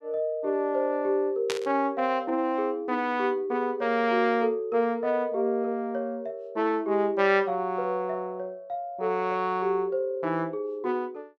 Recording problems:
burst of static; at 1.5 s; peak 0 dB vs average level

